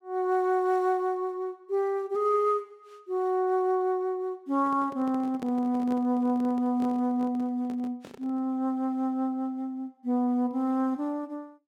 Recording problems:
handling noise; from 4.5 to 8.5 s; peak -9 dB vs average level

